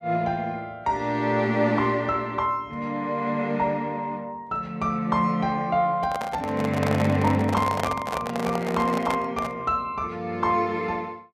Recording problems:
microphone handling noise; from 6 to 9.5 s; peak +3 dB vs average level

